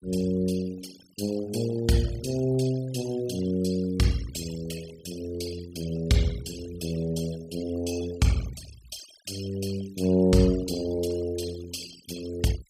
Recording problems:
denoising artefacts; signal-to-artefact ratio 16 dB

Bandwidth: 15.5 kHz